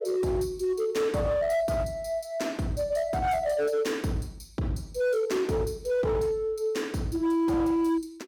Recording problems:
distorted audio; hard clipping, signal-to-distortion ratio 11 dB

